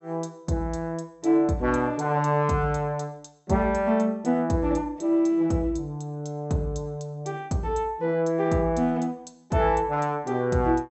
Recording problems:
treble missing; nothing above 7.9 kHz

